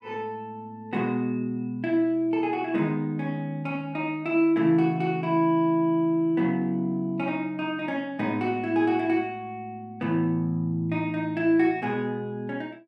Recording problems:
none

